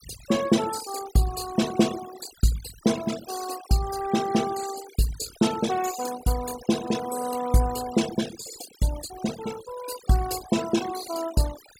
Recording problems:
denoising artefacts; signal-to-artefact ratio 12 dB

